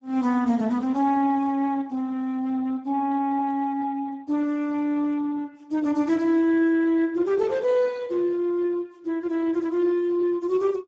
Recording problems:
lossy compression; Speex, log-spectral distance 2 dB

